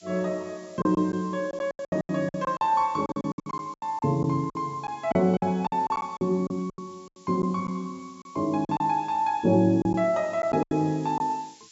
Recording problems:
treble missing; nothing above 8 kHz
hiss; SNR 27 dB
packet loss; 13% of the sound replaced, filled with silence

